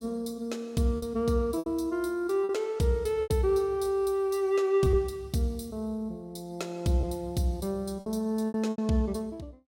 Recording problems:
lost packets; 6% of the sound replaced, filled with repeated pitch periods

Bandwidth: 16.5 kHz